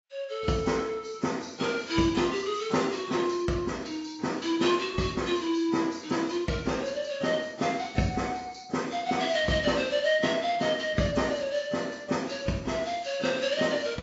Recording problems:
lossy codec; AAC, log-spectral distance 4 dB, nothing above 7.3 kHz

